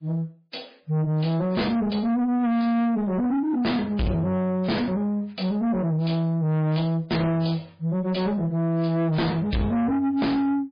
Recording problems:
codec artefacts; MP3, log-spectral distance 3 dB, nothing above 4.5 kHz
distortion; soft clipping, signal-to-distortion ratio 6 dB

